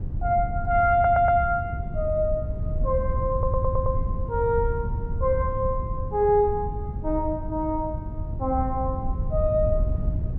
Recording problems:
rumble; below 100 Hz, SNR 5 dB
stutter; at 1 s and at 3.5 s

